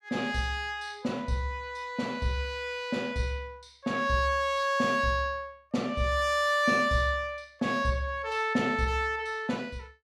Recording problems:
none

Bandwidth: 14 kHz